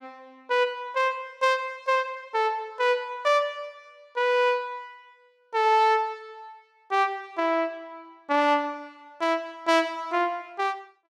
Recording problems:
none

